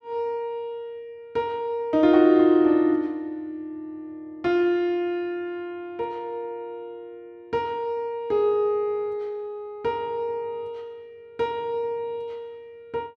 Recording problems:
none

